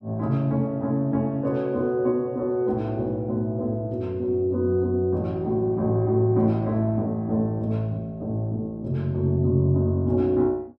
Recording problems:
none

